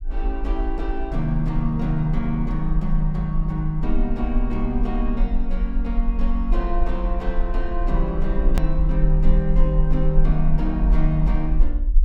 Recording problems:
rumble; below 42 Hz, strongest tone 20 Hz, SNR 0 dB
edit click; at 8.5 s

